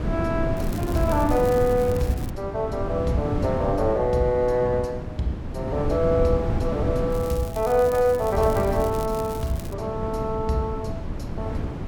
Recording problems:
wind on the microphone; below 270 Hz, SNR 5 dB
crackle; from 0.5 to 2.5 s and from 7 to 9.5 s; loose cable, SNR 18 dB

